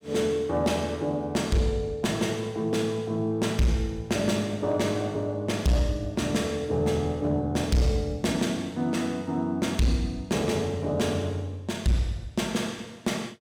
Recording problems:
distortion; hard clipping, signal-to-distortion ratio 12 dB

